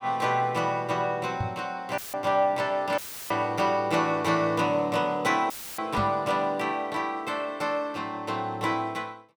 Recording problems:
knock on the microphone; at 1.5 s and at 6 s; peak 0 dB vs average level
audio cutting out; at 2 s, at 3 s and at 5.5 s; filled with static

